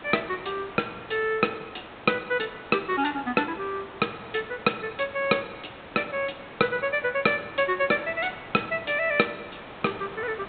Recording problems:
treble missing; nothing above 4 kHz
hiss; SNR 15 dB

